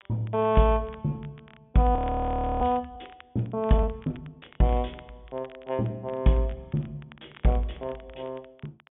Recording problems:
treble missing; nothing above 3.6 kHz
crackle; vinyl, SNR 27 dB
frozen audio; at 2 s for 0.5 s

